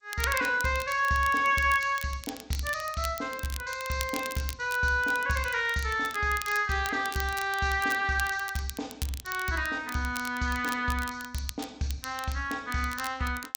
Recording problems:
codec artefacts; G.722, log-spectral distance 2 dB
crackle; vinyl, SNR 13 dB

